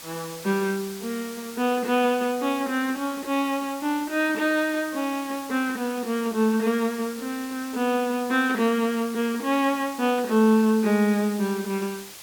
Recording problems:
background hiss; slope 0 dB per octave, SNR 15 dB

